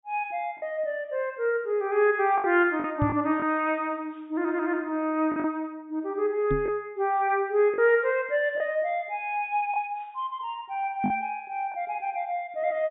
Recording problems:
low-pass filter; nothing above 4 kHz
packet loss; 3% of the sound replaced, filled with the last packet
knock on the microphone; at 3 s, at 6.5 s and at 11 s; peak +3 dB vs average level

